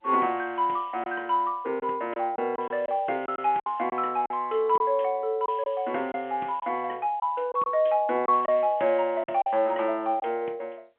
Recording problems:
phone line; 280 Hz to 3.3 kHz, G.711
lost packets; 6% of the sound replaced, filled with silence

